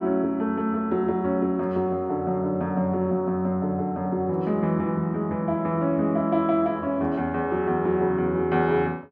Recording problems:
none

